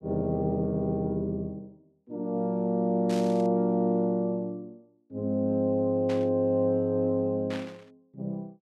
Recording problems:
burst of static; at 3 s, at 6 s and at 7.5 s; peak -9 dB vs average level

